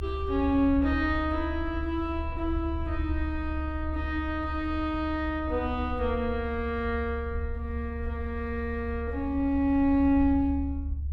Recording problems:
rumble; below 74 Hz, strongest tone 72 Hz, SNR 6 dB

